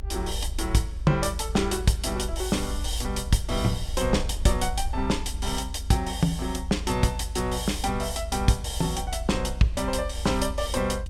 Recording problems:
low-frequency rumble; below 74 Hz, strongest tone 52 Hz, SNR 7 dB

